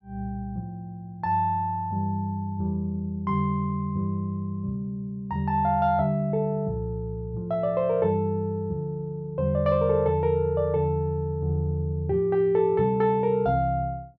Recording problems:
none

